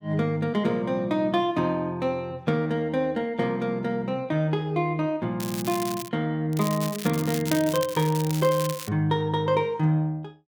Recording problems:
crackling; at 5.5 s and from 6.5 to 9 s; loose cable, SNR 10 dB

